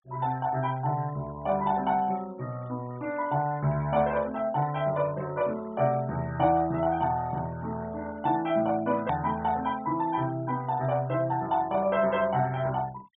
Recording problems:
treble missing; nothing above 4 kHz
noise reduction artefacts; signal-to-artefact ratio 22 dB
hard cut with a click; at 9 s

